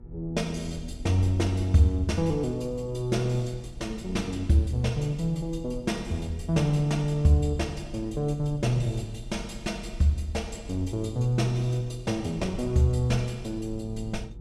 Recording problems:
electrical hum; 60 Hz, harmonics up to 1.3 kHz, SNR 25 dB
low-frequency rumble; below 56 Hz, SNR 16 dB

